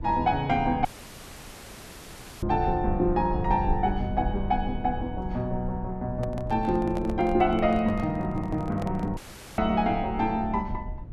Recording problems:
rumble; below 78 Hz, SNR 10 dB
audio cutting out; at 1 s for 1.5 s and at 9 s
microphone handling noise; from 6 to 9 s; peak -7 dB vs average level

